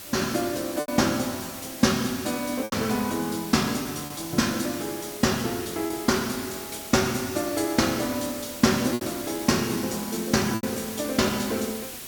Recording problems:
hiss; slope -1 dB per octave, SNR 10 dB
packet loss; 4% of the sound replaced, filled with repeated pitch periods

